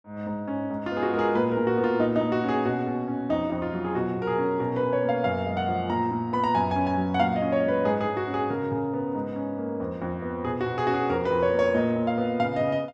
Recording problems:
none

